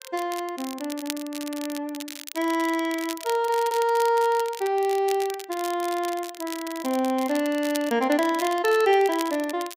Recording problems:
crackling; vinyl, SNR 13 dB

